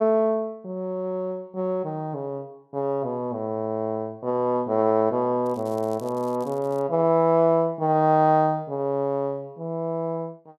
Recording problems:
crackling; from 5.5 to 7 s; loose cable, SNR 27 dB

